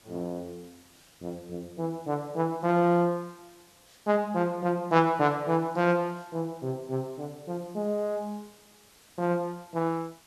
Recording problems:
hiss; slope -1 dB per octave, SNR 27 dB

